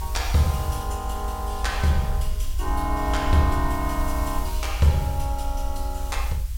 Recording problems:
background hiss; slope +2 dB per octave, SNR 16 dB
low-frequency rumble; below 58 Hz, SNR 4 dB

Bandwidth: 16.5 kHz